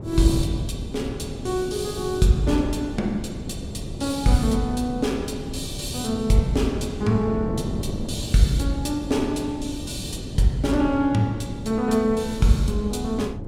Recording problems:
wind on the microphone; below 290 Hz, SNR 9 dB

